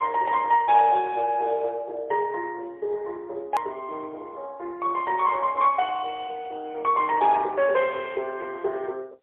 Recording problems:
phone line; 340 Hz to 3.8 kHz, AMR-NB, then MP3
hard cut with a click; at 3.5 s

